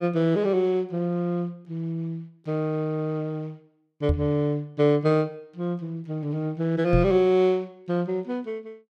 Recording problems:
microphone thump; at 4 s and at 7 s; peak +5 dB vs average level

